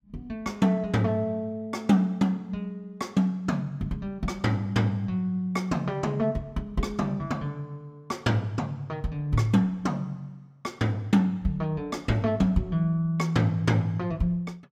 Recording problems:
none

